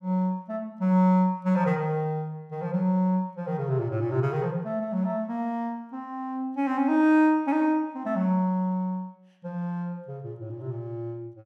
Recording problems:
none

